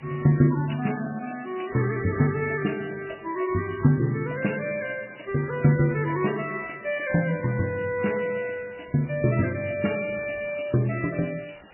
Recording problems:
codec artefacts; MP3, log-spectral distance 11 dB, nothing above 2.4 kHz
background hiss; SNR 25 dB

